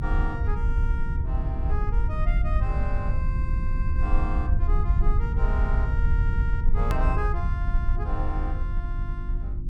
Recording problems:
electrical hum; 50 Hz, harmonics up to 350 Hz, SNR 4 dB
low-frequency rumble; below 66 Hz, SNR -9 dB
hard cut with a click; at 7 s

